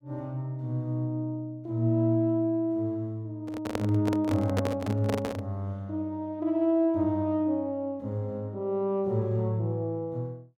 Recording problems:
microphone handling noise; from 3.5 to 5.5 s; peak +3 dB vs average level

